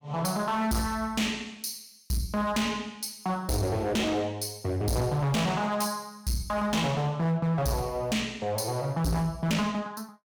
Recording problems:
distorted audio; hard clipping, uneven, signal-to-distortion ratio 7 dB

